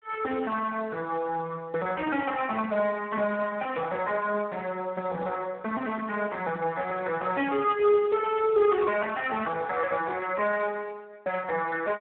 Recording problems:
phone line; 280 Hz to 2.8 kHz, Speex

